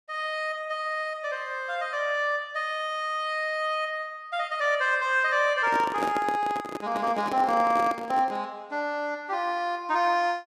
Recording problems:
microphone handling noise; from 5.5 to 8.5 s; peak 0 dB vs average level

